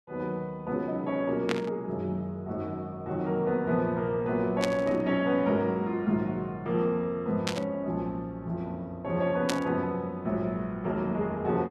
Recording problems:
burst of static; 4 times, first at 1.5 s; peak +3 dB vs average level

